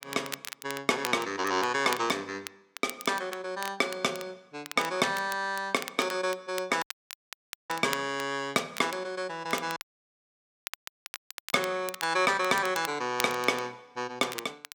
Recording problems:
crackling; vinyl, SNR 12 dB
dropout; at 7 s for 1 s and at 10 s for 2 s

